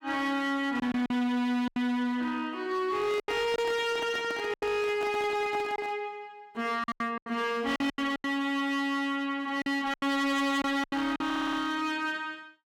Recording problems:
distortion; hard clipping, signal-to-distortion ratio 10 dB
packet loss; 8% of the sound replaced, filled with silence
microphone handling noise; from 3 to 6 s; peak -7 dB vs average level
stutter; at 11 s

